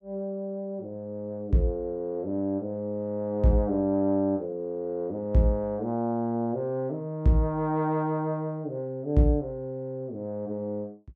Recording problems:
none

